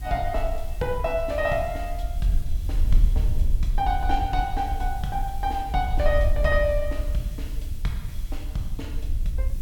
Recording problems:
background hiss; slope +4 dB per octave, SNR 21 dB
wind on the microphone; below 58 Hz, SNR 1 dB

